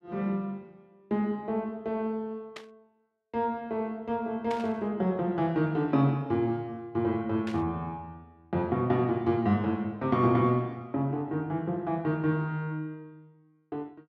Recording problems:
burst of static; at 2.5 s, at 4.5 s and at 7.5 s; peak -7 dB vs average level

